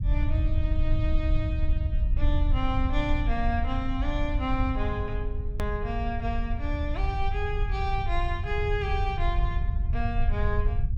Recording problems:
low-frequency rumble; below 76 Hz, SNR -3 dB
click at an edit; at 5.5 s

